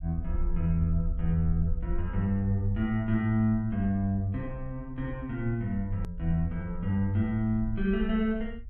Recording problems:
rumble; below 54 Hz, SNR 10 dB
hard cut with a click; at 6 s

